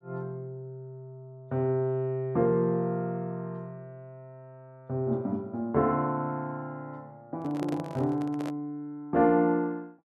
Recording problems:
microphone handling noise; from 7.5 to 8.5 s; peak -6 dB vs average level

